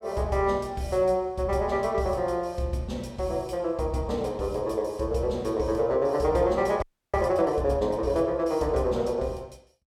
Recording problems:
audio freezing; at 7 s

